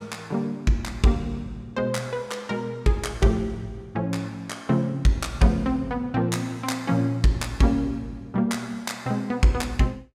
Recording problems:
none

